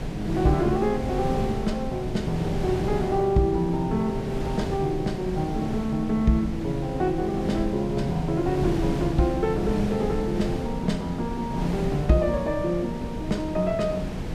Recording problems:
wind on the microphone; below 330 Hz, SNR 6 dB

